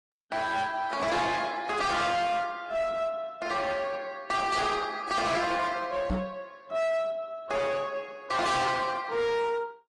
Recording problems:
codec artefacts; Opus, then AAC, log-spectral distance 3 dB, nothing above 10.4 kHz
distorted audio; hard clipping, uneven, signal-to-distortion ratio 8 dB
microphone bump; at 6 s; peak +2 dB vs average level

